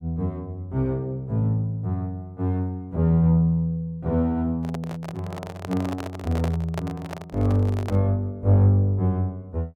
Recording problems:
microphone handling noise; from 4.5 to 8 s; peak -3 dB vs average level

